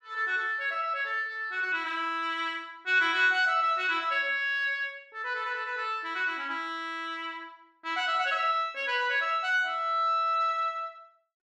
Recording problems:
none

